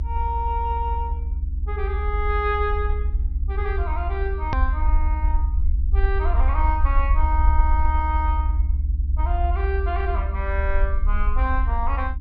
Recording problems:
low-pass filter; nothing above 6 kHz
hum; 50 Hz, harmonics up to 300 Hz, SNR 17 dB
rumble; below 70 Hz, SNR -4 dB
hard cut with a click; at 4.5 s

